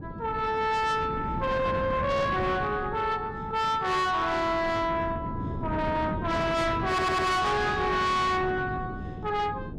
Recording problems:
distorted audio; soft clipping, signal-to-distortion ratio 7 dB
wind on the microphone; below 340 Hz, SNR 8 dB
stutter; at 7 s

